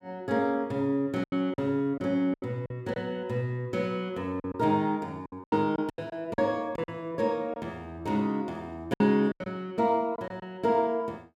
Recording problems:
lost packets; 8% of the sound replaced, filled with silence

